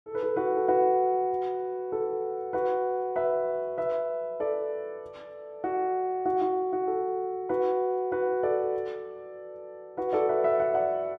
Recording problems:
none

